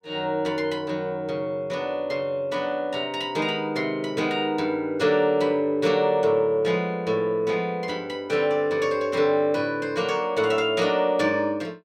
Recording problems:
none

